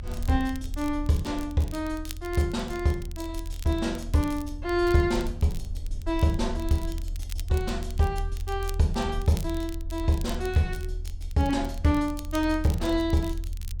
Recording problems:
low-frequency rumble; below 78 Hz, strongest tone 36 Hz, SNR 8 dB
crackle; vinyl, SNR 19 dB

